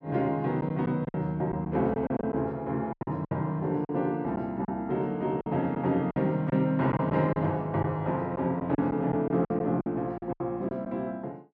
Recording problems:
packet loss; 9% of the sound replaced, filled with silence

